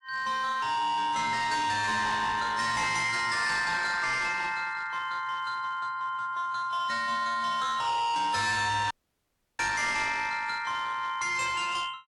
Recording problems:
codec artefacts; AAC, log-spectral distance 3 dB, nothing above 10.4 kHz
distorted audio; hard clipping, signal-to-distortion ratio 7 dB
dropout; at 9 s for 0.5 s

